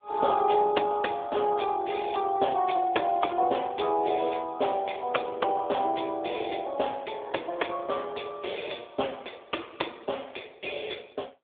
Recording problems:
telephone audio; 280 Hz to 3.6 kHz, AMR-NB

